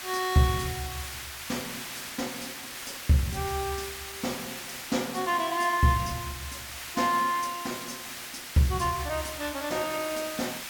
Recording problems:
background hiss; SNR 8 dB

